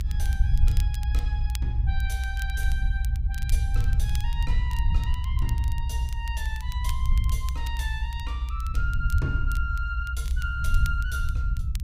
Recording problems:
rumble; below 68 Hz, SNR -9 dB
crackling; vinyl, SNR 11 dB

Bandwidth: 15.5 kHz